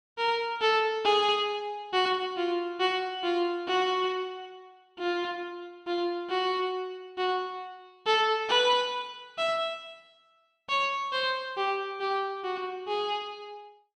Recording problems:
none

